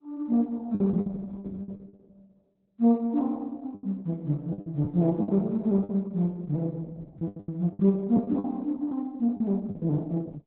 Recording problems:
lossy codec; Opus, log-spectral distance 2 dB, nothing above 3.9 kHz
packet loss; 10% of the sound replaced, filled with the last packet

